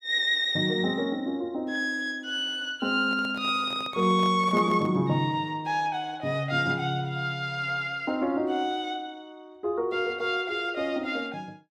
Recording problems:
handling noise; from 3 to 5 s; peak -7 dB vs average level

